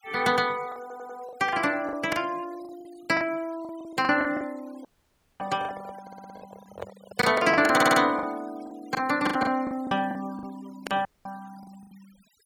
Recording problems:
denoising artefacts; signal-to-artefact ratio 24 dB
lost packets; 14% of the sound replaced, filled with the last packet
audio stuttering; at 1 s, at 6 s and at 7.5 s
handling noise; from 5 to 8.5 s; peak -5 dB vs average level
audio cutting out; at 5 s for 0.5 s and at 11 s

